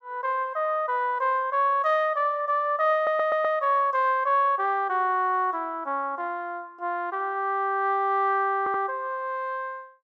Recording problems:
audio stuttering; at 3 s and at 8.5 s

